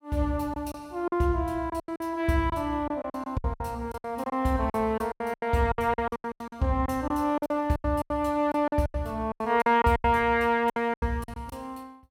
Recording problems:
lost packets; 17% of the sound replaced, filled with silence

